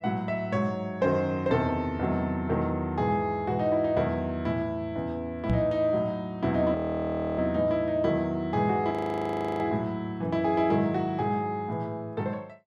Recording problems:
microphone bump; at 5.5 s; peak +4 dB vs average level
audio freezing; at 7 s for 0.5 s and at 9 s for 0.5 s

